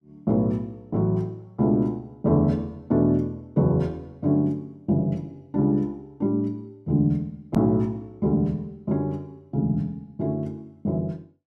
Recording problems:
edit click; at 7.5 s

